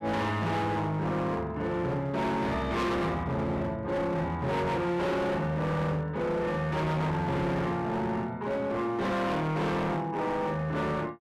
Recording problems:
distortion; hard clipping, signal-to-distortion ratio 7 dB

